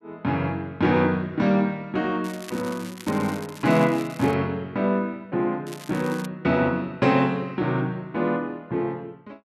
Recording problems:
crackling; from 2 to 4.5 s and at 5.5 s; loose cable, SNR 18 dB

